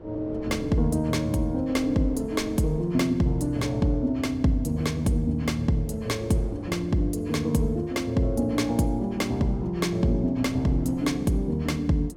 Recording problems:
wind on the microphone; below 440 Hz, SNR 18 dB

